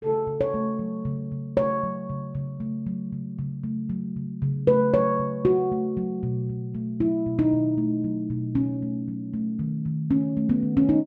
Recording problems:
none

